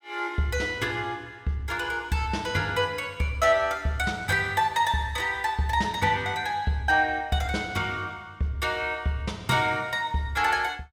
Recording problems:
none

